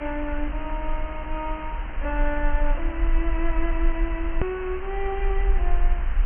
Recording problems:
treble missing; nothing above 3.1 kHz
electrical hum; 60 Hz, harmonics up to 720 Hz, SNR 15 dB
background hiss; SNR 9 dB
rumble; below 42 Hz, strongest tone 24 Hz, SNR -2 dB
edit click; at 4.5 s

